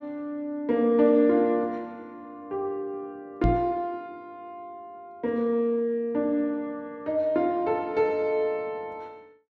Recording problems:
microphone bump; at 3.5 s; peak +5 dB vs average level

